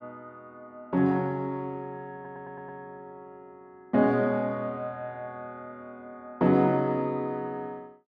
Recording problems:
audio stuttering; at 2 s

